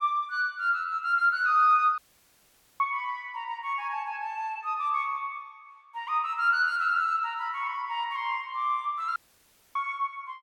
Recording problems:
audio cutting out; at 2 s for 1 s and at 9 s for 0.5 s

